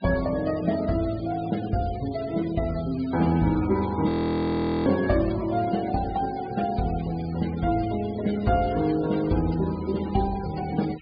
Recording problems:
treble missing; nothing above 4.9 kHz
denoising artefacts; signal-to-artefact ratio 18 dB
frozen audio; at 4 s for 1 s

